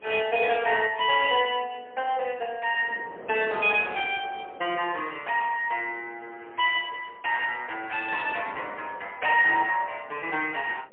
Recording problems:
phone line; 320 Hz to 3.3 kHz, AMR-NB, then MP3
wind noise; below 730 Hz, SNR 20 dB

